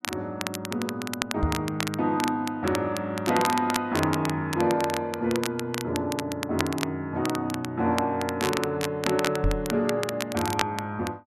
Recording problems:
crackle; vinyl, SNR 7 dB
knock on the microphone; at 1.5 s and at 9.5 s; peak +5 dB vs average level

